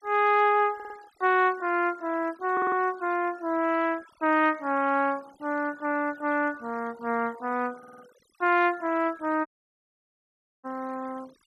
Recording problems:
denoising artefacts; signal-to-artefact ratio 25 dB
audio stuttering; at 1 s, at 2.5 s and at 8 s
dropout; at 9.5 s for 1 s

